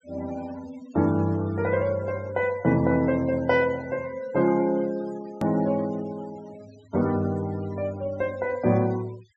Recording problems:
treble cut off; nothing above 8 kHz
denoising artefacts; signal-to-artefact ratio 21 dB
edit click; at 5.5 s

